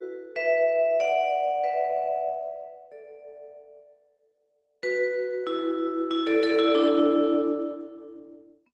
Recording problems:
codec artefacts; Opus, log-spectral distance 2 dB

